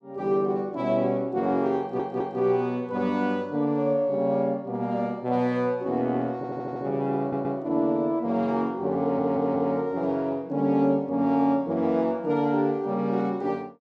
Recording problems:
stutter; 4 times, first at 2 s

